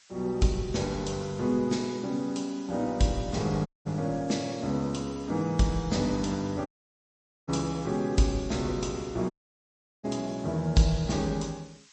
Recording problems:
codec artefacts; MP3, log-spectral distance 4 dB, nothing above 8.2 kHz
hiss; slope +4 dB per octave, SNR 24 dB
audio cutting out; at 3.5 s, at 6.5 s for 1 s and at 9.5 s for 0.5 s

